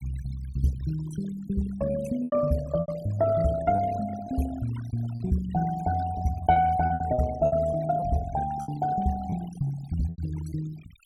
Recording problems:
noise reduction artefacts; signal-to-artefact ratio 16 dB
packet loss; 7% of the sound replaced, filled with repeated pitch periods

